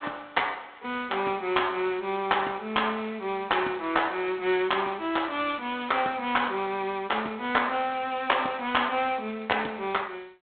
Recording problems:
phone line; 260 Hz to 3.6 kHz, G.726

